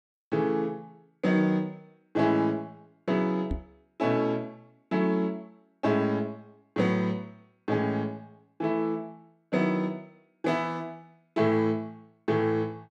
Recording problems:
microphone bump; at 3.5 s; peak 0 dB vs average level

